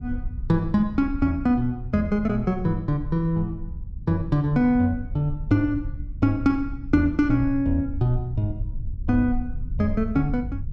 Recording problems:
low-frequency rumble; below 74 Hz, SNR 11 dB

